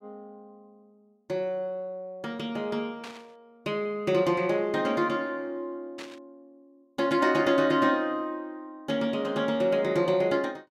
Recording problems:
static burst; at 3 s and at 6 s; peak -10 dB vs average level

